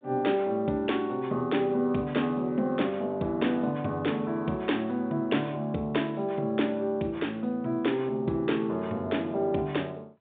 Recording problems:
phone line; 150 Hz to 3.7 kHz, G.726

